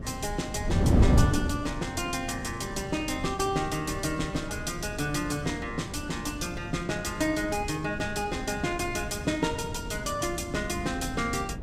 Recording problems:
wind noise; below 230 Hz, SNR 3 dB

